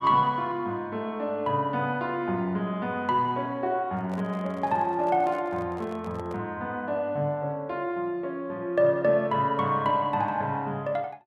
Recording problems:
microphone handling noise; from 4 to 6.5 s; peak -11 dB vs average level

